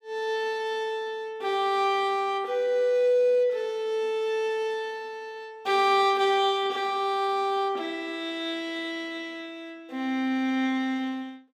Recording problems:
none

